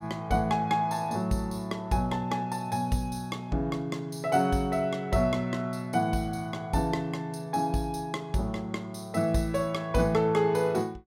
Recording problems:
none

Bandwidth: 16 kHz